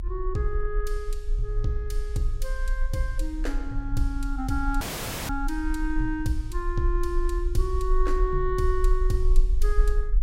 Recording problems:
low-frequency rumble; below 40 Hz, strongest tone 24 Hz, SNR -1 dB
audio cutting out; at 5 s

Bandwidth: 16 kHz